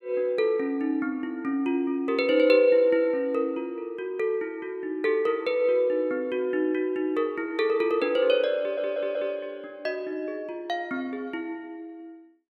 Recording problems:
audio stuttering; at 8.5 s

